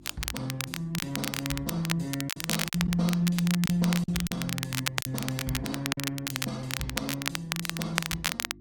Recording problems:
lossy compression; Opus, log-spectral distance 2 dB, nothing above 17.1 kHz
electrical hum; 50 Hz, harmonics up to 350 Hz, SNR 20 dB
crackle; vinyl, SNR 2 dB
lost packets; 4% of the sound replaced, filled with silence

